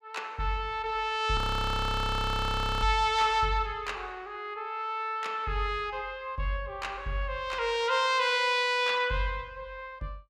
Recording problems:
audio freezing; at 1.5 s for 1.5 s

